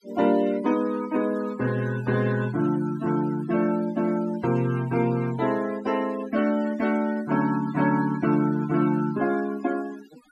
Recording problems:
denoising artefacts; signal-to-artefact ratio 18 dB

